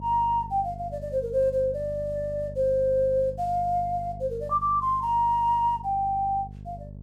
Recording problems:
hum; 50 Hz, harmonics up to 500 Hz, SNR 15 dB

